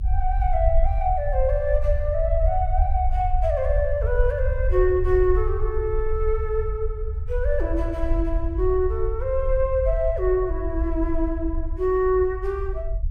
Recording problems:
rumble; below 62 Hz, SNR 2 dB

